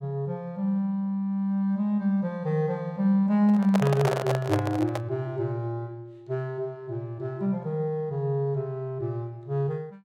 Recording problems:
microphone handling noise; from 3.5 to 5 s; peak +3 dB vs average level

